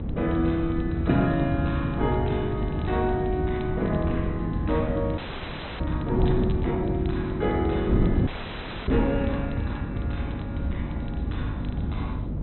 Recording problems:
treble cut off; nothing above 4 kHz
hum; 50 Hz, harmonics up to 300 Hz, SNR 6 dB
wind noise; below 250 Hz, SNR 4 dB
crackling; vinyl, SNR 27 dB
audio freezing; at 5 s for 0.5 s and at 8.5 s for 0.5 s

